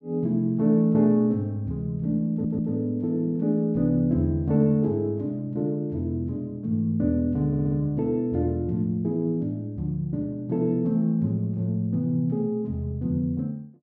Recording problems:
audio stuttering; at 2.5 s and at 7.5 s

